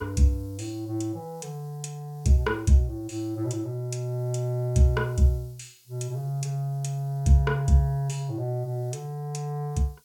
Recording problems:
background hiss; SNR 30 dB

